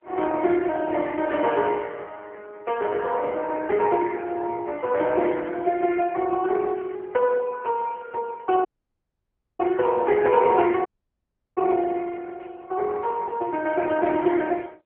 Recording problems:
phone line; 320 Hz to 2.1 kHz, AMR-NB
dropout; at 8.5 s for 1 s and at 11 s for 0.5 s

